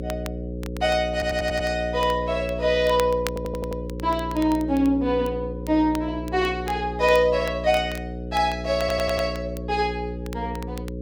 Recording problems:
hum; 60 Hz, harmonics up to 540 Hz, SNR 9 dB
crackling; vinyl, SNR 19 dB
audio stuttering; at 1 s, at 3.5 s and at 9 s

